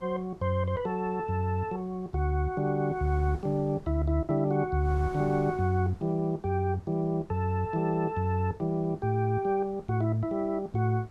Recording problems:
wind on the microphone; below 480 Hz, SNR 23 dB

